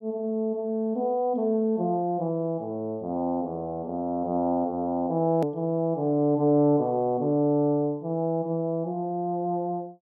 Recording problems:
hard cut with a click; at 5.5 s

